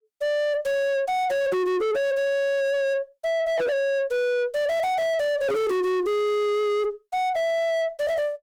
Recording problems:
distorted audio; soft clipping, signal-to-distortion ratio 5 dB

